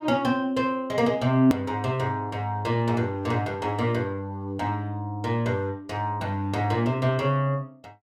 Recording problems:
click at an edit; at 1.5 s

